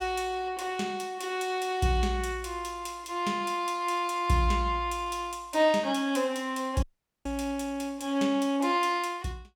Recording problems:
audio cutting out; at 7 s

